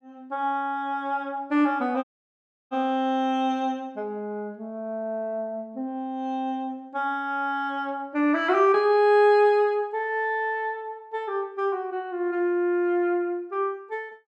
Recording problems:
audio cutting out; at 2 s for 0.5 s

